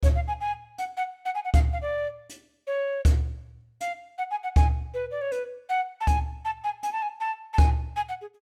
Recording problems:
none

